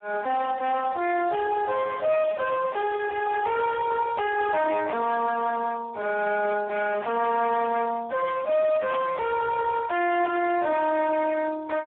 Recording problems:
phone line; 370 Hz to 2.3 kHz, Speex
distortion; soft clipping, signal-to-distortion ratio 6 dB
static burst; at 9 s; peak -7 dB vs average level

